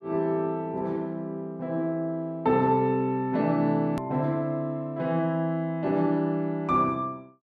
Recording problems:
hard cut with a click; at 4 s

